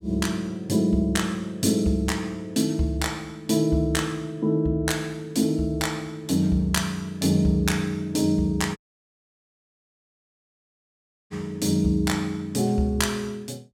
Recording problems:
audio cutting out; at 9 s for 2.5 s

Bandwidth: 16 kHz